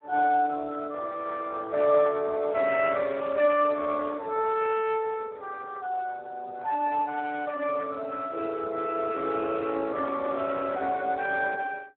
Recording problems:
phone line; 240 Hz to 2.6 kHz, Speex

